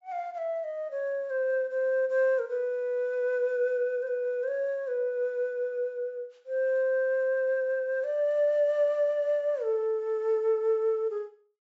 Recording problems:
treble missing; nothing above 7.6 kHz

